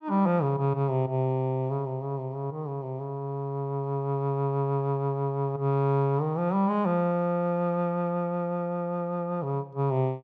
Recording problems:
none

